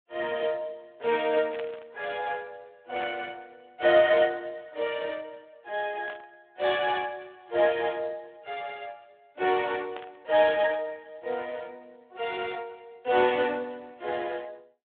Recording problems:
phone line; 300 Hz to 3.5 kHz, Speex
static burst; 4 times, first at 1.5 s; peak -8 dB vs average level

